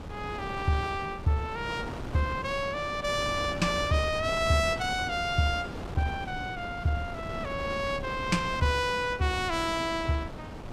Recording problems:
wind noise; below 610 Hz, SNR 9 dB

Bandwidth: 15.5 kHz